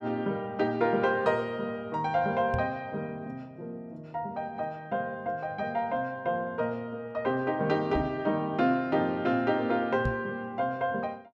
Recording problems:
microphone bump; at 2.5 s, at 8 s and at 10 s; peak +2 dB vs average level

